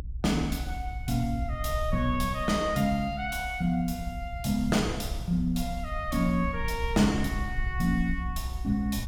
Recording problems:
rumble; below 68 Hz, SNR 7 dB

